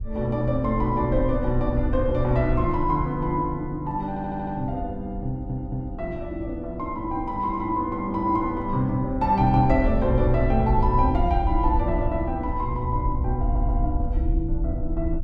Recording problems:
wind on the microphone; below 68 Hz, SNR 5 dB
stutter; at 4 s, at 5.5 s and at 13 s

